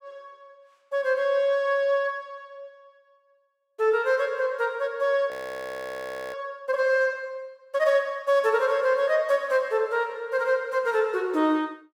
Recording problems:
frozen audio; at 5.5 s for 1 s

